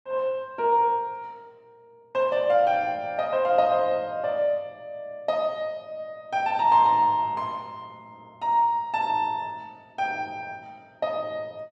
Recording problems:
none

